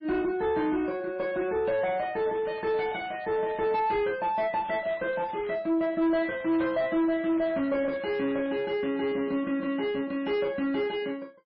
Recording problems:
lossy codec; MP3, log-spectral distance 2 dB, nothing above 4.8 kHz
distorted audio; soft clipping, signal-to-distortion ratio 9 dB
crackle; from 2 to 4 s, from 4.5 to 5.5 s and from 6 to 8.5 s; loose cable, SNR 22 dB

